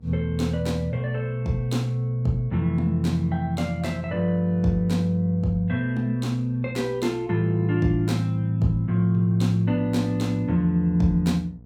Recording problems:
hum; 60 Hz, harmonics up to 720 Hz, SNR 26 dB

